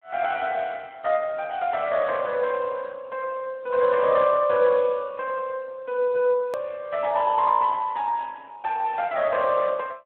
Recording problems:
telephone audio; 110 Hz to 3 kHz, Speex
click at an edit; at 6.5 s

